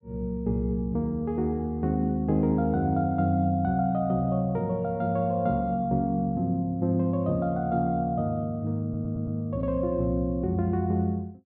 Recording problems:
treble cut off; nothing above 4.7 kHz
audio stuttering; at 9 s

